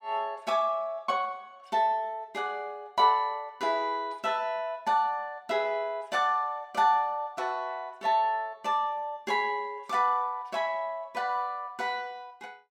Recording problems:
none

